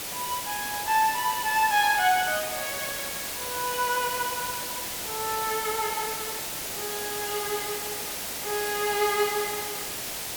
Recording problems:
hiss; slope -1 dB per octave, SNR 3 dB

